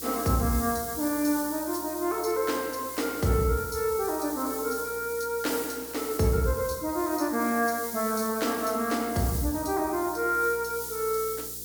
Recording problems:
electrical hum; 60 Hz, harmonics up to 480 Hz, SNR 24 dB
background hiss; SNR 8 dB

